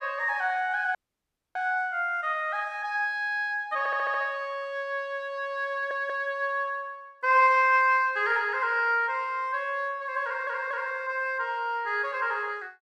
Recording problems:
dropout; at 1 s for 0.5 s
audio stuttering; at 4 s, at 5.5 s and at 10 s

